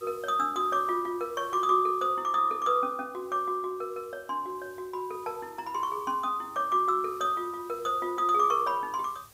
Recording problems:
hiss; slope -2 dB per octave, SNR 26 dB

